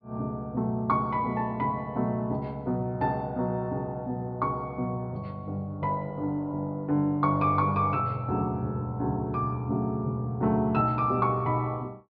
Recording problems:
low-pass filter; nothing above 5.5 kHz

